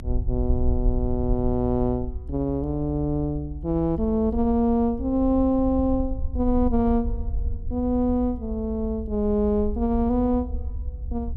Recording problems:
low-frequency rumble; below 66 Hz, SNR 8 dB

